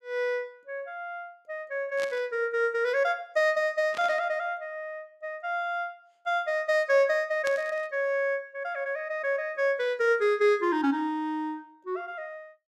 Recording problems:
static burst; at 2 s, at 4 s and at 7.5 s; peak -6 dB vs average level

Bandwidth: 14 kHz